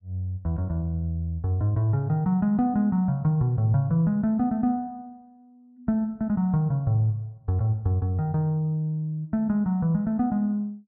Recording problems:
none

